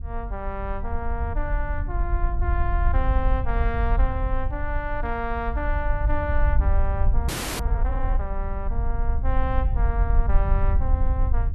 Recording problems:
wind on the microphone; below 64 Hz, SNR -5 dB
frozen audio; at 7.5 s

